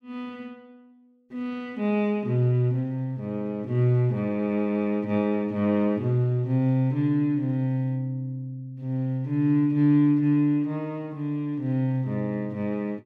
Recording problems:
none

